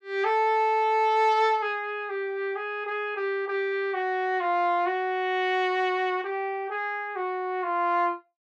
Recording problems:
none

